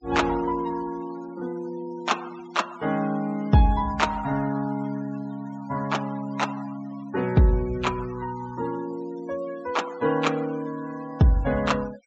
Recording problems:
treble missing; nothing above 8 kHz
denoising artefacts; signal-to-artefact ratio 19 dB

